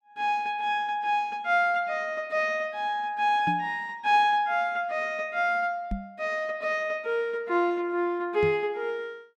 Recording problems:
microphone thump; at 3.5 s, at 6 s and at 8.5 s; peak -2 dB vs average level

